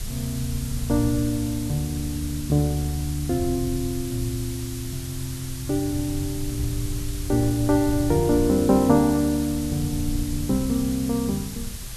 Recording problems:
hiss; slope +2 dB per octave, SNR 12 dB
rumble; below 96 Hz, SNR 12 dB

